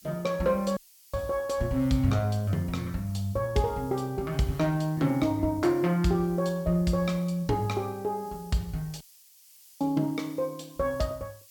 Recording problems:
hiss; SNR 23 dB
audio cutting out; at 1 s and at 9 s for 1 s

